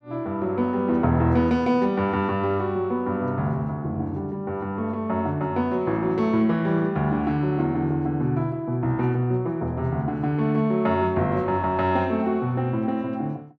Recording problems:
none

